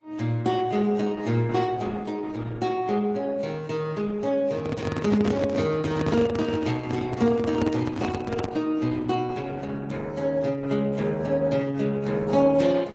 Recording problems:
lossy codec; AAC, then Opus, log-spectral distance 3 dB, nothing above 7.6 kHz
handling noise; from 4.5 to 8.5 s; peak +1 dB vs average level

